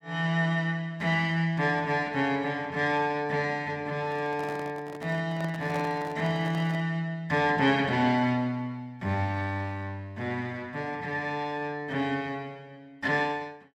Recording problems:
handling noise; from 4 to 7 s; peak -6 dB vs average level

